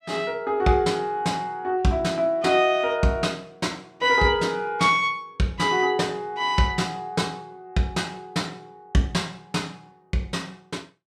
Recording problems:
none

